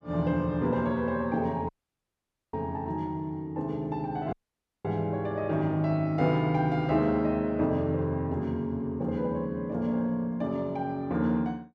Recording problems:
audio cutting out; at 1.5 s for 1 s and at 4.5 s for 0.5 s

